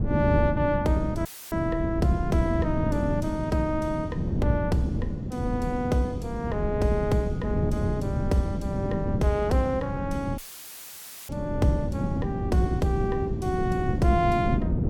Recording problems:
wind noise; below 230 Hz, SNR 2 dB
dropout; at 1.5 s and at 10 s for 1 s; filled with static

